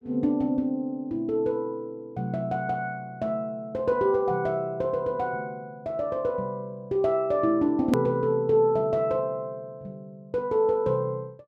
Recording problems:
hard cut with a click; at 8 s

